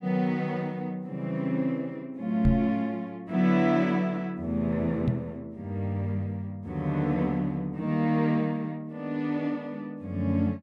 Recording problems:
microphone bump; at 2.5 s and at 5 s; peak +7 dB vs average level

